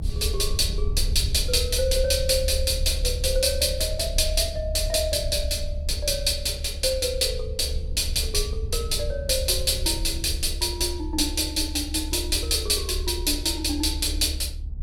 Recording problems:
low-frequency rumble; below 72 Hz, SNR 7 dB

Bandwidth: 17 kHz